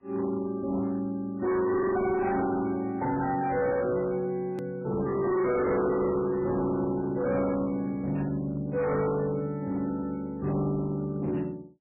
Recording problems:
lossy compression; MP3, log-spectral distance 2 dB, nothing above 2.2 kHz
distortion; hard clipping, signal-to-distortion ratio 8 dB
edit click; at 4.5 s

